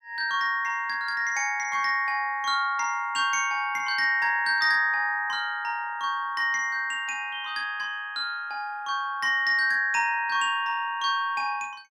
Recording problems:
none

